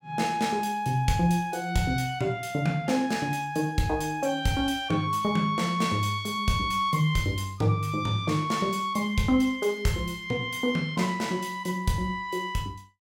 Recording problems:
none

